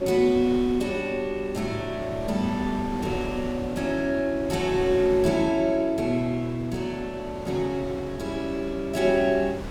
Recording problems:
wind on the microphone; below 610 Hz, SNR 13 dB

